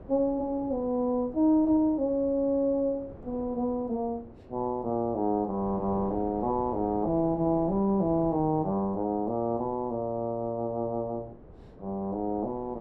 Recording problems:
wind on the microphone; below 440 Hz, SNR 18 dB

